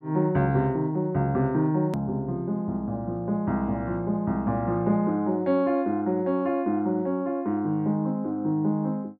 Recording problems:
click at an edit; at 2 s

